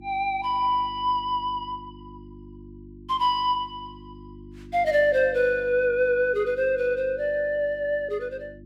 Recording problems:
hum; 50 Hz, harmonics up to 350 Hz, SNR 21 dB

